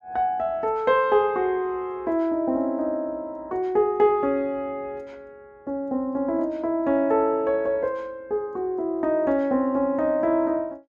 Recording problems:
none

